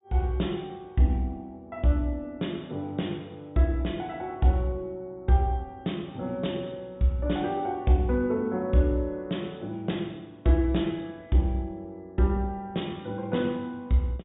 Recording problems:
treble missing; nothing above 4 kHz

